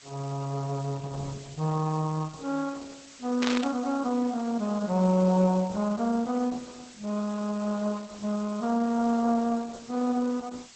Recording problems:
lossy codec; Opus, log-spectral distance 9 dB
background hiss; slope +2 dB per octave, SNR 20 dB
burst of static; at 3.5 s; peak +1 dB vs average level

